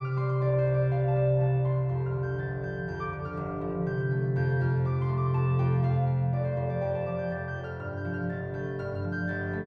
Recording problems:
none

